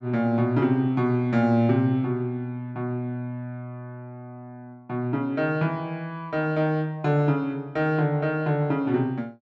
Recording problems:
none

